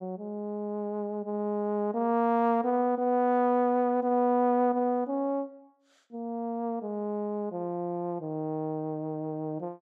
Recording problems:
none

